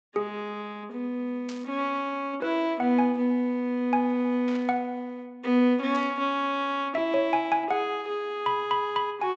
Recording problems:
treble missing; nothing above 8 kHz
burst of static; at 1.5 s, at 4.5 s and at 6 s; peak -11 dB vs average level

